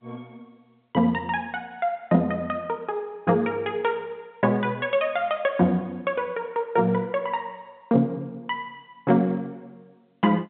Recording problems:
telephone audio; 130 Hz to 3.7 kHz, G.711

